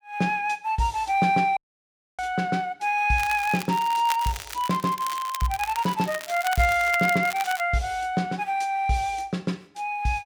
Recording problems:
dropout; at 1.5 s for 0.5 s
crackle; from 3 to 7.5 s; loose cable, SNR 12 dB

